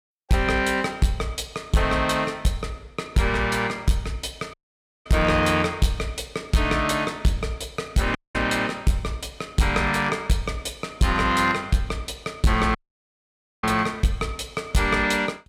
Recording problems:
distorted audio; hard clipping, uneven, signal-to-distortion ratio 11 dB
dropout; at 4.5 s for 0.5 s, at 8 s and at 13 s for 1 s

